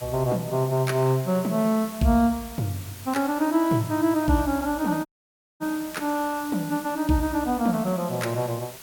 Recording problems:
background hiss; slope 0 dB per octave, SNR 16 dB
audio cutting out; at 5 s for 0.5 s

